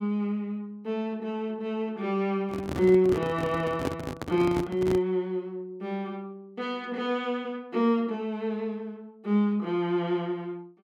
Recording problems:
microphone handling noise; from 2.5 to 5 s; peak +2 dB vs average level

